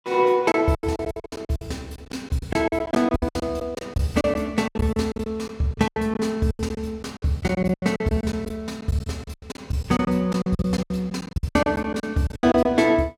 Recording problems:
packet loss; 19% of the sound replaced, filled with silence

